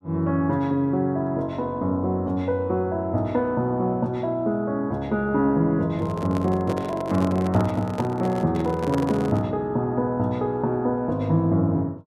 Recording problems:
microphone handling noise; from 6 to 9.5 s; peak -2 dB vs average level

